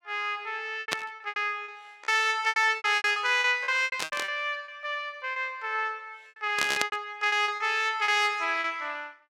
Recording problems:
lost packets; 14% of the sound replaced, filled with repeated pitch periods
static burst; at 1 s, at 4 s and at 6.5 s; peak +4 dB vs average level

